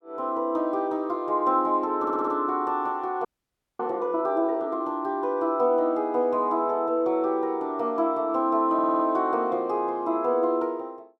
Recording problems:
audio stuttering; at 2 s and at 8.5 s
audio freezing; at 3.5 s for 0.5 s

